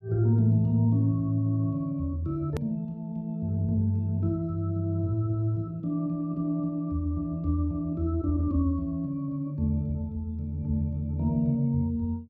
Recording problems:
hard cut with a click; at 2.5 s

